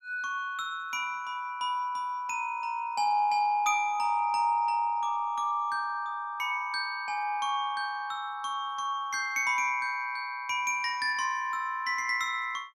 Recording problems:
none

